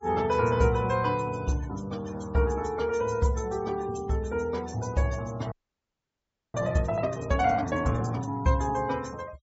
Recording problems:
treble cut off; nothing above 8 kHz
noise reduction artefacts; signal-to-artefact ratio 23 dB
audio freezing; at 5.5 s for 1 s

